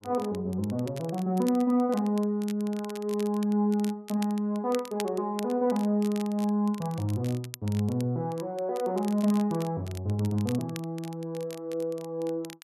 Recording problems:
crackling; vinyl, SNR 18 dB

